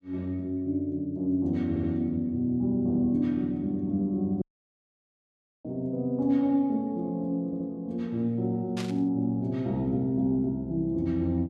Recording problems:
audio stuttering; at 1.5 s and at 7.5 s
dropout; at 4.5 s for 1 s
burst of static; at 9 s; peak -6 dB vs average level

